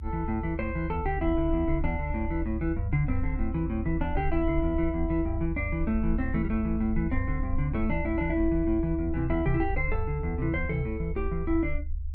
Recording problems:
low-frequency rumble; below 72 Hz, SNR 5 dB

